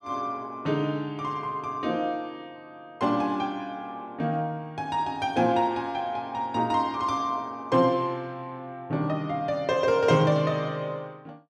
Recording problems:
none

